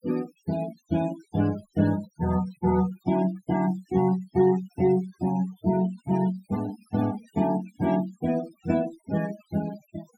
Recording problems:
denoising artefacts; signal-to-artefact ratio 18 dB

